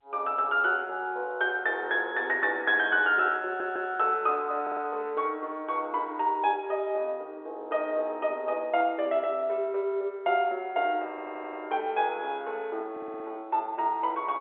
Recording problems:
telephone audio; 340 Hz to 3.5 kHz, G.711
stutter; 4 times, first at 3.5 s

